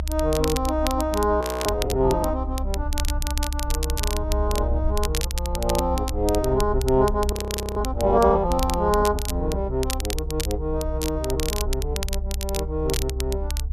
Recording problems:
rumble; below 66 Hz, SNR 4 dB
crackling; vinyl, SNR 8 dB
frozen audio; at 1.5 s and at 7.5 s

